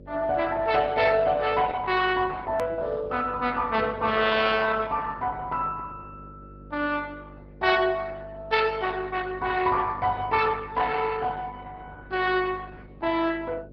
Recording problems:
treble cut off; nothing above 5.5 kHz
codec artefacts; Opus, log-spectral distance 4 dB
mains hum; 50 Hz, harmonics up to 600 Hz, SNR 21 dB
click at an edit; at 2.5 s

